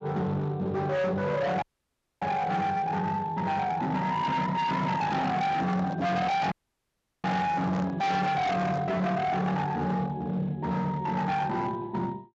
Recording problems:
lossy codec; Speex, log-spectral distance 2 dB, nothing above 7.3 kHz
distorted audio; hard clipping, signal-to-distortion ratio 6 dB
dropout; at 1.5 s for 0.5 s and at 6.5 s for 0.5 s
handling noise; from 4.5 to 9 s; peak -2 dB vs average level

